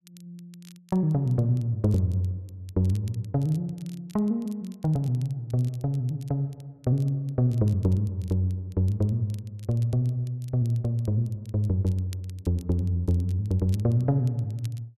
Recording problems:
crackle; vinyl, SNR 29 dB

